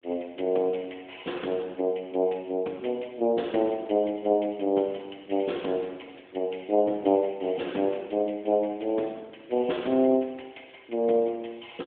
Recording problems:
phone line; 220 Hz to 3.6 kHz, AMR-NB

